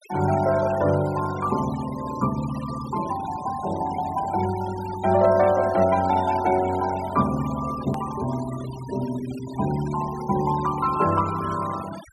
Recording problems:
denoising artefacts; signal-to-artefact ratio 15 dB
hard cut with a click; at 8 s

